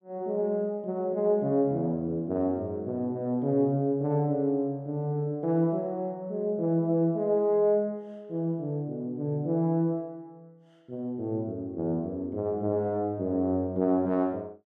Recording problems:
none

